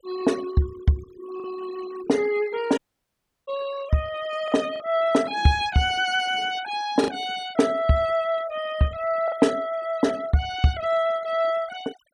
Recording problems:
noise reduction artefacts; signal-to-artefact ratio 18 dB
lost packets; 1.7% of the sound replaced, filled with the last packet
audio cutting out; at 3 s for 0.5 s

